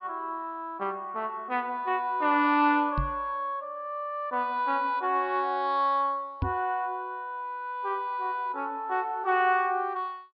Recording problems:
treble missing; nothing above 5.5 kHz
microphone bump; at 3 s and at 6.5 s; peak +3 dB vs average level

